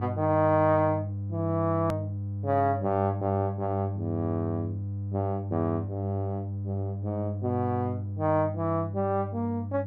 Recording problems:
hum; 50 Hz, harmonics up to 500 Hz, SNR 5 dB
click at an edit; at 2 s

